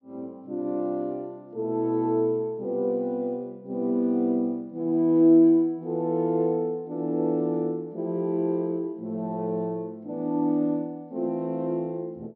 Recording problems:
low-pass filter; nothing above 6 kHz

